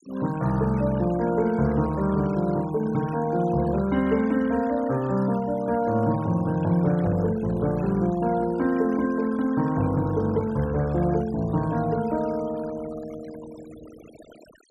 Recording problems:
denoising artefacts; signal-to-artefact ratio 20 dB

